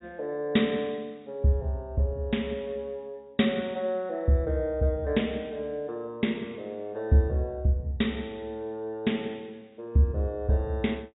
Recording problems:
low-pass filter; nothing above 4 kHz

